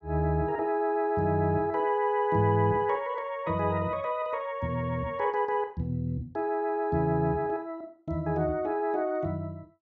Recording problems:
none

